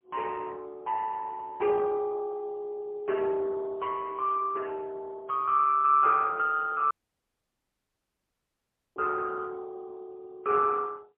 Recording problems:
phone line; 320 Hz to 2.3 kHz, AMR-NB, then MP3
dropout; at 7 s for 2 s

